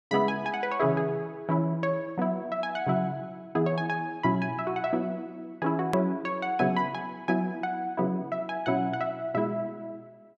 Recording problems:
hard cut with a click; at 6 s

